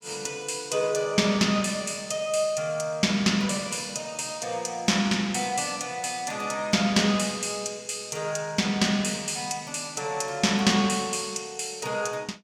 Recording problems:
none

